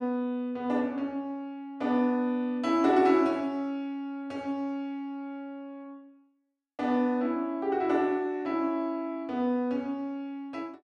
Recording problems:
none

